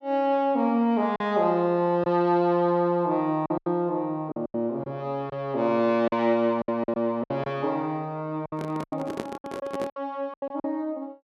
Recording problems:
packet loss; 9% of the sound replaced, filled with silence
handling noise; from 8.5 to 10 s; peak -1 dB vs average level

